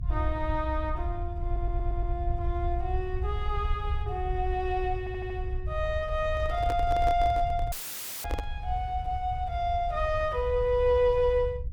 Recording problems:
rumble; below 70 Hz, SNR 5 dB
stutter; at 1.5 s and at 5 s
microphone handling noise; from 6.5 to 8.5 s; peak -2 dB vs average level
dropout; at 7.5 s for 0.5 s; filled with static

